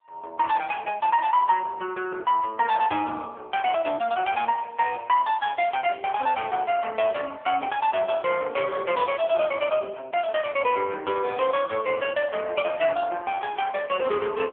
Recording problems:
phone line; 340 Hz to 3.3 kHz, AMR-NB

